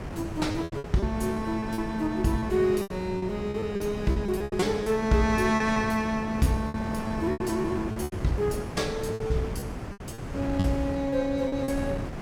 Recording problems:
wind on the microphone; below 470 Hz, SNR 8 dB
packet loss; 12% of the sound replaced, filled with repeated pitch periods

